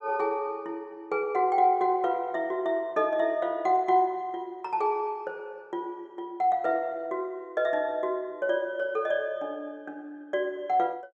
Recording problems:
none

